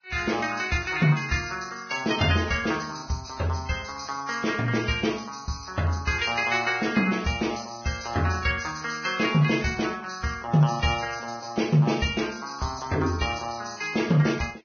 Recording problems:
lossy compression; Vorbis, log-spectral distance 5 dB, nothing above 6.3 kHz

